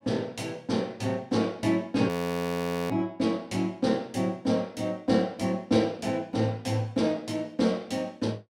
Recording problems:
frozen audio; at 2 s for 1 s

